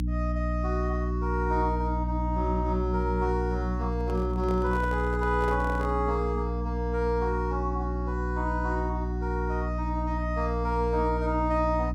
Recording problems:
mains hum; 60 Hz, harmonics up to 300 Hz, SNR 1 dB
handling noise; from 4 to 6 s; peak -3 dB vs average level

